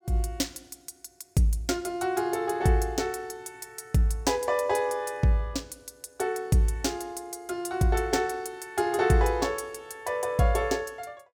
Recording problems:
none

